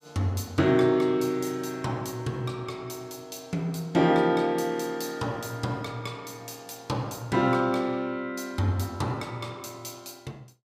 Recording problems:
none

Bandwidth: 15.5 kHz